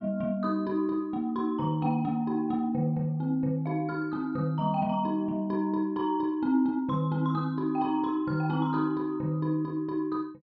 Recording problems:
none

